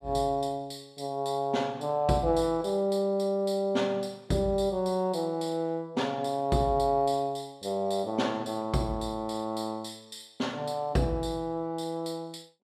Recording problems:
none

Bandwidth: 14.5 kHz